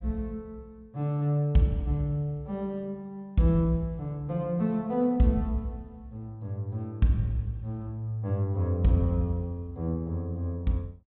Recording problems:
low-pass filter; nothing above 4 kHz

